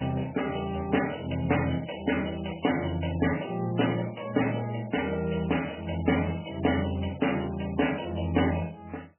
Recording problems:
codec artefacts; MP3, log-spectral distance 12 dB, nothing above 3 kHz

